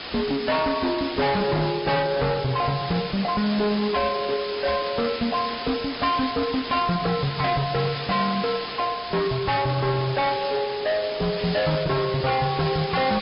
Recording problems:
treble cut off; nothing above 5.2 kHz
lossy compression; AAC, log-spectral distance 11 dB
distorted audio; hard clipping, uneven, signal-to-distortion ratio 6 dB
background hiss; slope -1 dB per octave, SNR 7 dB

